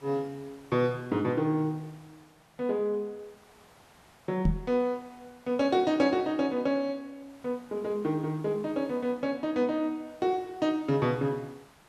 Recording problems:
background hiss; SNR 27 dB
knock on the microphone; at 4.5 s; peak +6 dB vs average level

